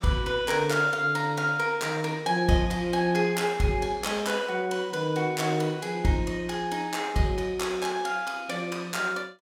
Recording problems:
none

